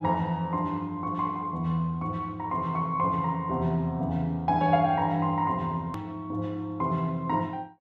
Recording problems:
edit click; at 6 s

